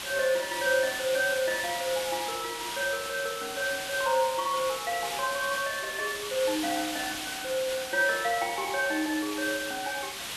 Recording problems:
hiss; SNR 5 dB

